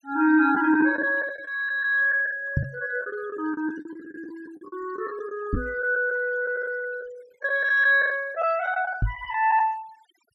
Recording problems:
denoising artefacts; signal-to-artefact ratio 24 dB
packet loss; 9% of the sound replaced, filled with the last packet
microphone thump; at 2.5 s, at 5.5 s and at 9 s; peak +3 dB vs average level

